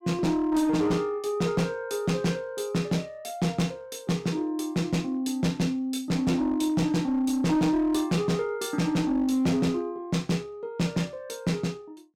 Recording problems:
distortion; hard clipping, uneven, signal-to-distortion ratio 12 dB

